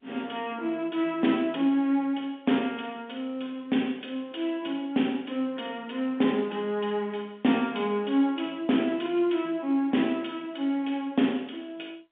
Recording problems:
phone line; 130 Hz to 3.6 kHz, G.711

